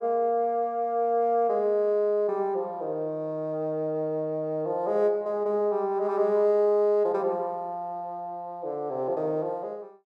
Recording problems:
none

